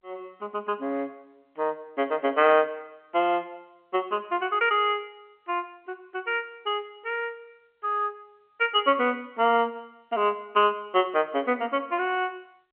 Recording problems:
telephone audio; 220 Hz to 3.2 kHz, G.711

